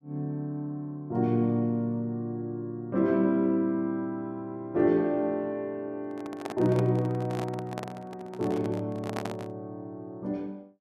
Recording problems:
handling noise; from 6 to 9.5 s; peak -1 dB vs average level

